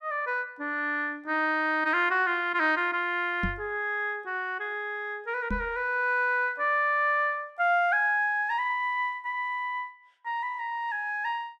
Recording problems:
microphone thump; at 3.5 s and at 5.5 s; peak 0 dB vs average level

